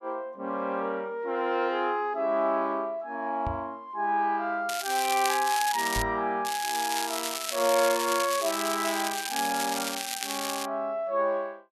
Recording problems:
knock on the microphone; at 3.5 s and at 6 s; peak -3 dB vs average level
crackle; from 4.5 to 6 s and from 6.5 to 11 s; loose cable, SNR 4 dB

